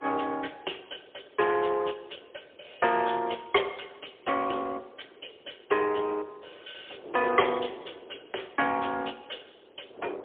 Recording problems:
phone line; 320 Hz to 3.4 kHz, AMR-NB, then MP3
wind on the microphone; below 620 Hz, SNR 20 dB

